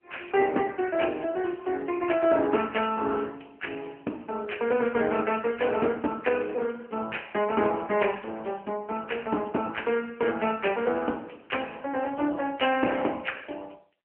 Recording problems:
phone line; 260 Hz to 3.1 kHz, AMR-NB

